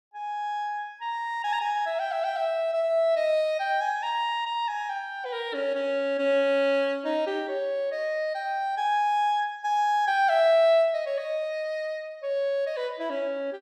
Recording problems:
none

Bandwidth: 14.5 kHz